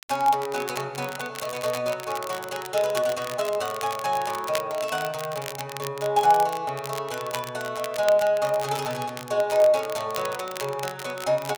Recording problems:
crackling; vinyl, SNR 12 dB

